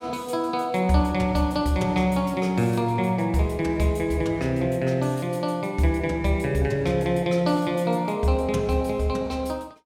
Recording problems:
none

